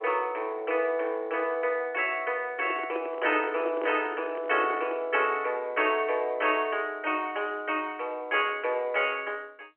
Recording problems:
phone line; 280 Hz to 3.2 kHz, G.711
microphone handling noise; from 2.5 to 5 s; peak -3 dB vs average level

